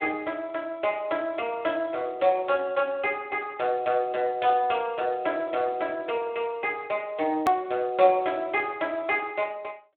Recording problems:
telephone audio; 280 Hz to 3.7 kHz, Speex
edit click; at 7.5 s

